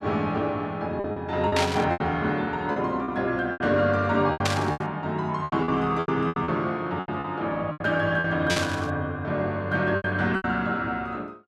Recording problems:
lost packets; 11% of the sound replaced, filled with repeated pitch periods
static burst; at 1.5 s, at 4.5 s and at 8.5 s; peak +4 dB vs average level

